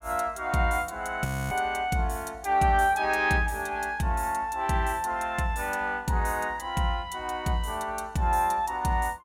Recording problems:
frozen audio; at 1.5 s

